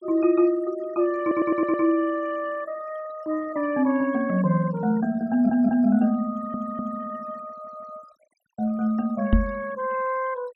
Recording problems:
denoising artefacts; signal-to-artefact ratio 23 dB
audio stuttering; 4 times, first at 1 s
microphone bump; at 9.5 s; peak +7 dB vs average level

